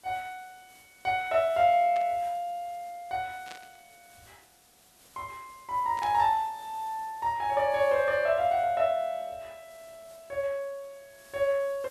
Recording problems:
background hiss; slope -1 dB per octave, SNR 27 dB
burst of static; at 2 s, at 3.5 s and at 6 s; peak -11 dB vs average level

